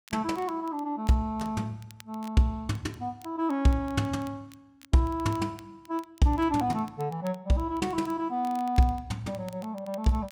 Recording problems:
crackling; vinyl, SNR 26 dB

